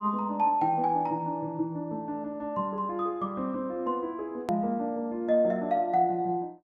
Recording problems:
hard cut with a click; at 4.5 s

